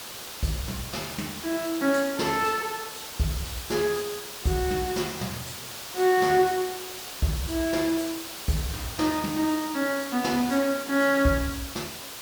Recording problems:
hiss; slope -1 dB per octave, SNR 9 dB

